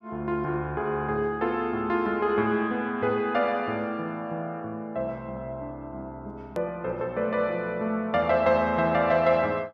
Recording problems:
edit click; at 6.5 s

